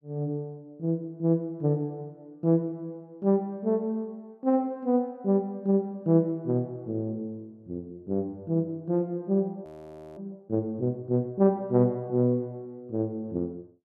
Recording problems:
frozen audio; at 9.5 s for 0.5 s

